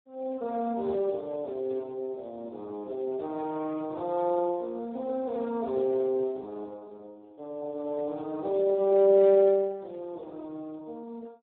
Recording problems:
phone line; 190 Hz to 2.3 kHz, Speex

